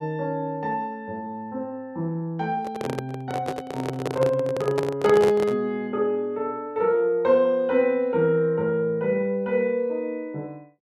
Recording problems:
microphone handling noise; from 2.5 to 5.5 s; peak +3 dB vs average level

